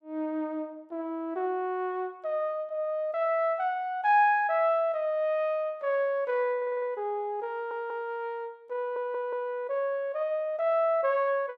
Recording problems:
audio stuttering; at 6.5 s, at 7.5 s and at 9 s

